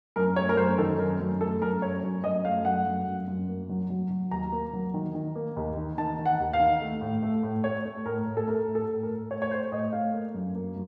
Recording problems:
none

